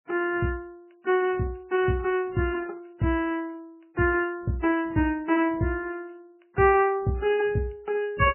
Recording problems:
codec artefacts; MP3, log-spectral distance 3 dB, nothing above 3 kHz

